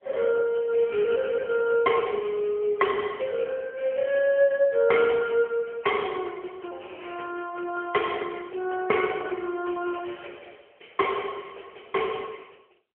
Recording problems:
phone line; 320 Hz to 3.2 kHz, AMR-NB

